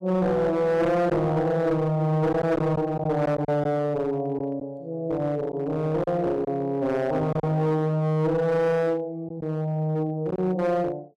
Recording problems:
distorted audio; hard clipping, uneven, signal-to-distortion ratio 9 dB
packet loss; 3% of the sound replaced, filled with silence

